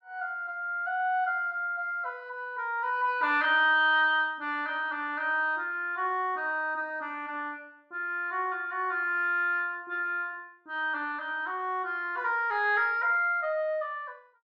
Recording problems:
none

